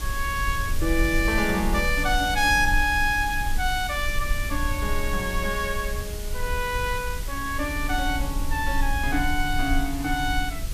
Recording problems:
background hiss; SNR 12 dB
low-frequency rumble; below 56 Hz, strongest tone 22 Hz, SNR 6 dB

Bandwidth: 14.5 kHz